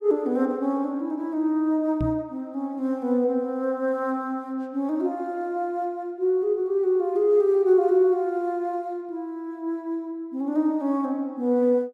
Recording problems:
microphone thump; at 2 s; peak 0 dB vs average level

